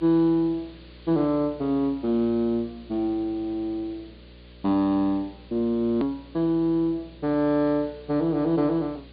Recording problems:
treble missing; nothing above 4.8 kHz
hum; 60 Hz, harmonics up to 600 Hz, SNR 24 dB
background hiss; SNR 28 dB
hard cut with a click; at 6 s

